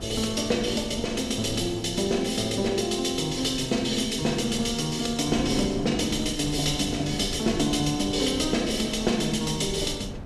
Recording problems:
wind noise; below 270 Hz, SNR 13 dB

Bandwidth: 14.5 kHz